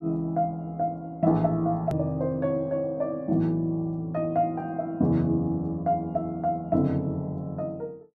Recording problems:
hard cut with a click; at 2 s

